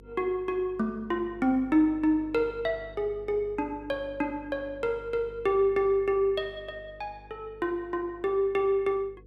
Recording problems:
hum; 50 Hz, harmonics up to 500 Hz, SNR 22 dB

